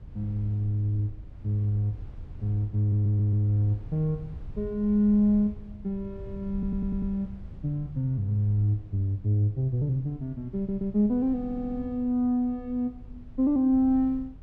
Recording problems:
rumble; below 94 Hz, SNR 17 dB
audio stuttering; 4 times, first at 3 s

